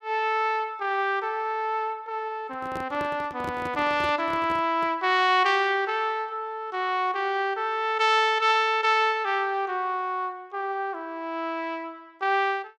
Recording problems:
handling noise; from 2.5 to 5 s; peak -7 dB vs average level

